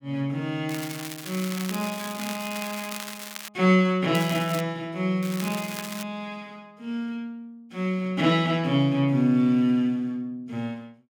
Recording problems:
crackle; from 0.5 to 3.5 s, at 4 s and at 5 s; loose cable, SNR 11 dB

